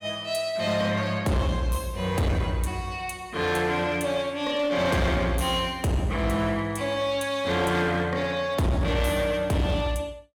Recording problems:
distortion; hard clipping, uneven, signal-to-distortion ratio 10 dB

